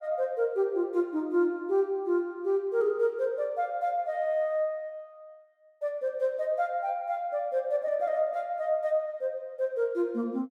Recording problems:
none

